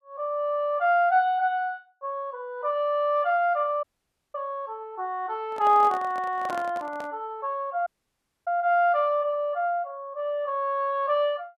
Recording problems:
audio cutting out; at 4 s for 0.5 s and at 8 s for 0.5 s
microphone handling noise; from 5.5 to 7 s; peak -6 dB vs average level

